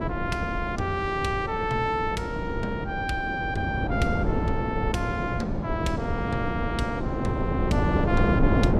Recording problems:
wind noise; below 370 Hz, SNR -1 dB

